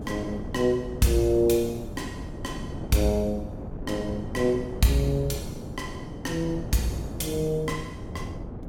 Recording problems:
wind on the microphone; below 330 Hz, SNR 10 dB

